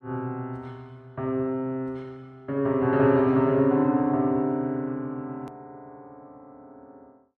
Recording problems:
click at an edit; at 5.5 s

